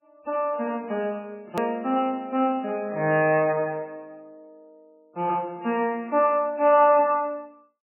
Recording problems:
lossy codec; MP3, log-spectral distance 2 dB, nothing above 18.3 kHz
click at an edit; at 1.5 s

